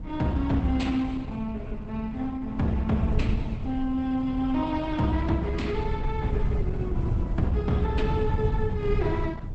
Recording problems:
lossy compression; Opus, log-spectral distance 2 dB, nothing above 8.2 kHz
wind on the microphone; below 130 Hz, SNR 3 dB

